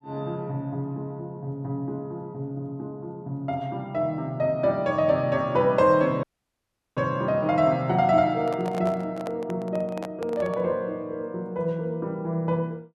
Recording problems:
dropout; at 6 s for 0.5 s
microphone handling noise; from 8.5 to 11 s; peak -5 dB vs average level

